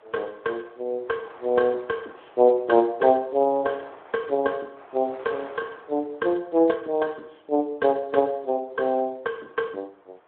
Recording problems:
telephone audio; 300 Hz to 2.2 kHz, Speex
wind on the microphone; below 1.3 kHz, SNR 24 dB

